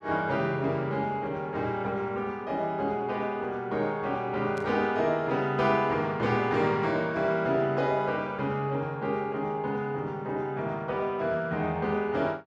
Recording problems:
static burst; at 4.5 s; peak -14 dB vs average level

